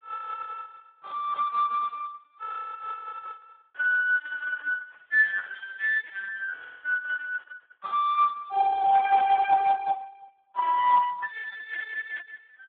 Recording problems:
telephone audio; 990 Hz to 2.3 kHz, Speex

